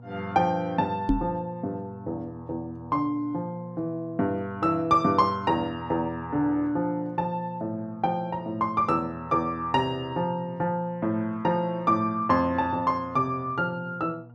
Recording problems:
hum; 60 Hz, harmonics up to 960 Hz, SNR 19 dB
microphone thump; at 1 s; peak +7 dB vs average level

